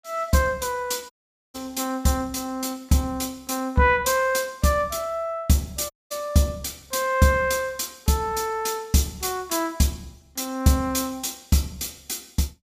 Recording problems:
audio cutting out; at 1 s and at 6 s

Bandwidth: 15 kHz